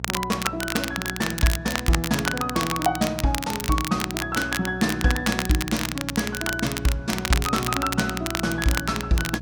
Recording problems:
hum; 60 Hz, harmonics up to 660 Hz, SNR 12 dB
crackling; vinyl, SNR 4 dB

